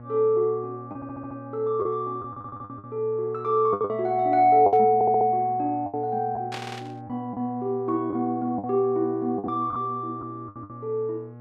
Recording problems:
hum; 60 Hz, harmonics up to 1.3 kHz, SNR 18 dB
packet loss; 8% of the sound replaced, filled with the last packet
audio stuttering; 4 times, first at 1 s
burst of static; at 4.5 s and at 6.5 s; peak -7 dB vs average level

